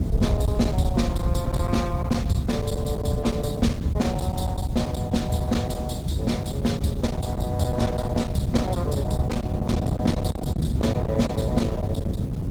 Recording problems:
lossy codec; Opus, log-spectral distance 2 dB, nothing above 19 kHz
distortion; hard clipping, uneven, signal-to-distortion ratio 11 dB
hiss; slope -1 dB per octave, SNR 24 dB
rumble; below 150 Hz, SNR -2 dB

